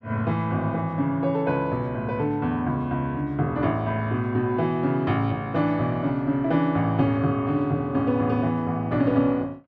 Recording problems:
none

